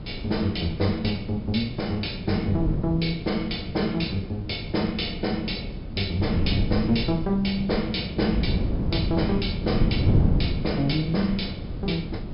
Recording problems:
treble missing; nothing above 5.5 kHz
background hiss; SNR 28 dB
wind on the microphone; below 200 Hz, SNR 3 dB

